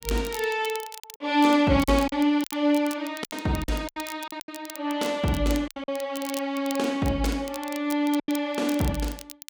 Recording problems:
crackle; vinyl, SNR 16 dB
lost packets; 8% of the sound replaced, filled with silence

